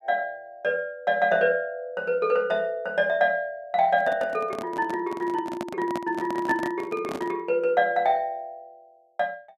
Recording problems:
handling noise; from 4 to 7.5 s; peak -3 dB vs average level

